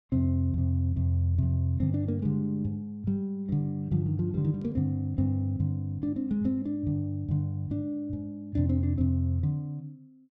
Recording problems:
none

